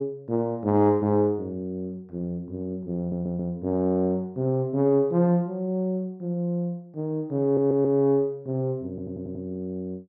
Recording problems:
stutter; at 3 s, at 7.5 s and at 9 s

